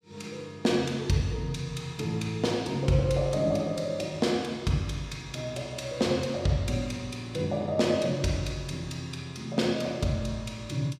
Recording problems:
none

